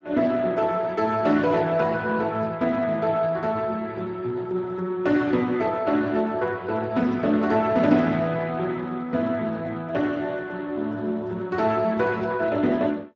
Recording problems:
lossy compression; Speex, log-spectral distance 3 dB

